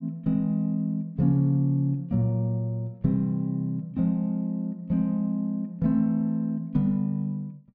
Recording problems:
none

